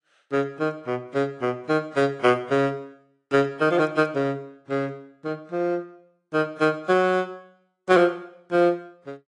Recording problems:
lossy codec; AAC, log-spectral distance 2 dB, nothing above 10.1 kHz

